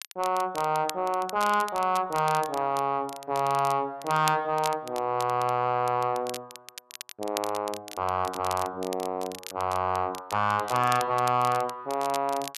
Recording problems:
distortion; soft clipping, signal-to-distortion ratio 7 dB
crackling; vinyl, SNR 14 dB

